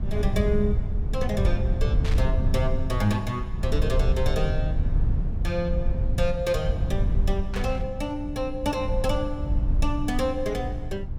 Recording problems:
low-frequency rumble; below 82 Hz, SNR -1 dB
burst of static; at 2 s and at 7.5 s; peak -4 dB vs average level

